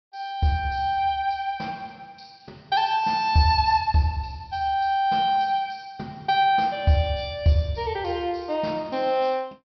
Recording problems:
treble missing; nothing above 5.5 kHz

